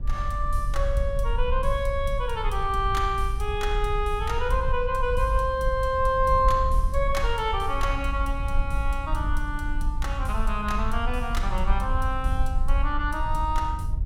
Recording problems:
low-frequency rumble; below 56 Hz, SNR 3 dB

